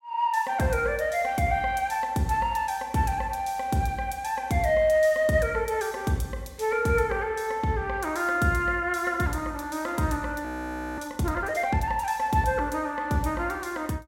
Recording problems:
frozen audio; at 10 s for 0.5 s

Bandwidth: 16.5 kHz